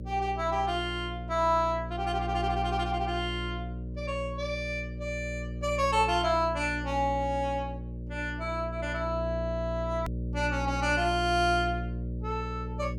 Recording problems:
mains hum; 60 Hz, harmonics up to 600 Hz, SNR 6 dB
hard cut with a click; at 10 s

